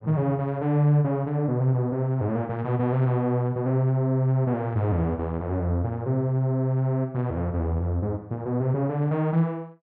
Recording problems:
none

